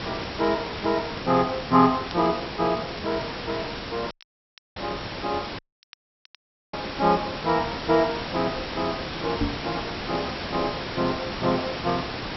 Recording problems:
treble cut off; nothing above 5.6 kHz
hiss; slope -3 dB per octave, SNR 6 dB
crackle; vinyl, SNR 27 dB
audio cutting out; at 4 s for 0.5 s and at 5.5 s for 1 s
knock on the microphone; at 9.5 s; peak +4 dB vs average level

